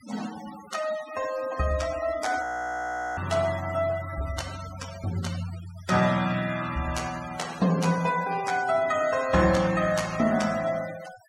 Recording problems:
noise reduction artefacts; signal-to-artefact ratio 14 dB
frozen audio; at 2.5 s for 0.5 s

